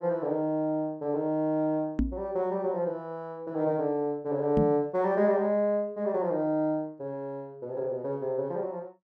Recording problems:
knock on the microphone; at 2 s and at 4.5 s; peak +5 dB vs average level

